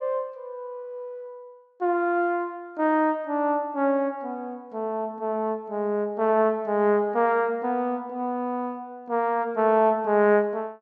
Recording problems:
none

